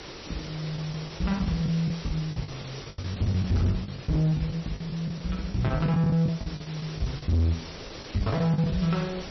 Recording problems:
lossy compression; MP3, log-spectral distance 14 dB, nothing above 5.8 kHz
distorted audio; hard clipping, signal-to-distortion ratio 10 dB
background hiss; SNR 14 dB
wind noise; below 510 Hz, SNR 21 dB
lost packets; 15% of the sound replaced, filled with the last packet

